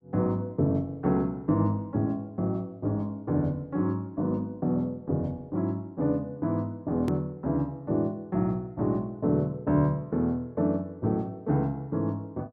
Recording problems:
edit click; at 7 s

